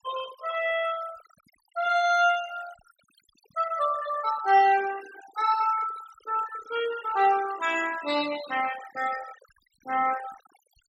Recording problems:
noise reduction artefacts; signal-to-artefact ratio 16 dB

